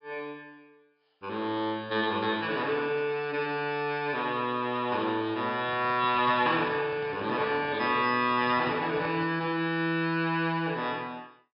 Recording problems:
low-pass filter; nothing above 5.5 kHz
handling noise; from 5.5 to 9.5 s; peak -11 dB vs average level

